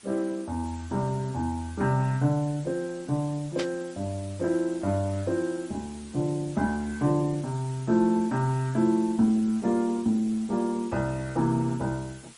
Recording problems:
lossy compression; Opus, then MP3, log-spectral distance 6 dB, nothing above 13.1 kHz
background hiss; slope 0 dB per octave, SNR 23 dB
burst of static; at 3.5 s; peak -4 dB vs average level

